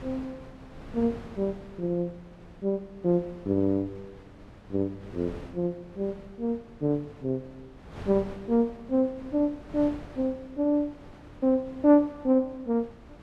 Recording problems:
wind noise; below 600 Hz, SNR 19 dB

